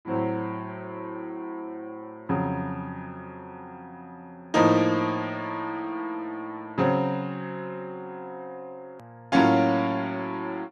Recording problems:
hard cut with a click; at 9 s

